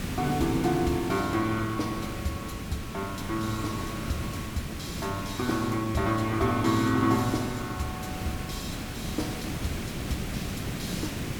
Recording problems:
background hiss; SNR 5 dB

